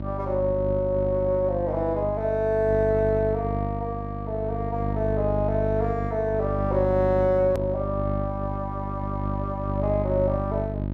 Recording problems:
hum; 50 Hz, harmonics up to 700 Hz, SNR 4 dB
click at an edit; at 7.5 s

